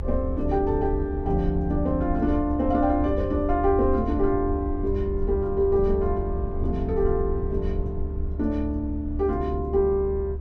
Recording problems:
rumble; below 72 Hz, SNR 6 dB

